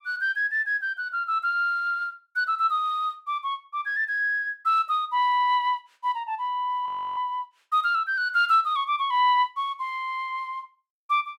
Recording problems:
audio freezing; at 7 s

